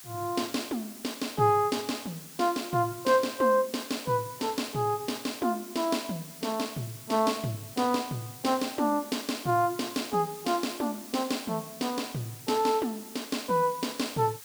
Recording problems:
hiss; slope +2 dB per octave, SNR 15 dB

